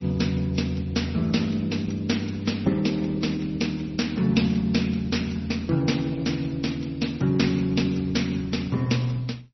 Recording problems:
lossy compression; Opus, then MP3, log-spectral distance 7 dB, nothing above 5.8 kHz

